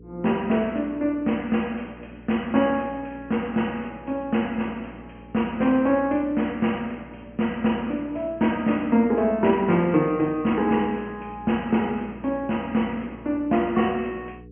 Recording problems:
treble missing; nothing above 3 kHz
hum; 60 Hz, harmonics up to 480 Hz, SNR 21 dB

